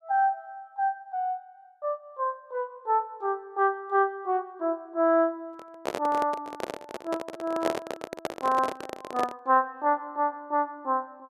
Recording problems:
microphone handling noise; from 5.5 to 9.5 s; peak +4 dB vs average level

